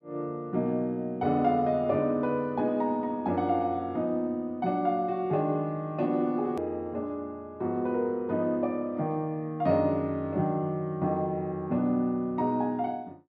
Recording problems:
hard cut with a click; at 6.5 s

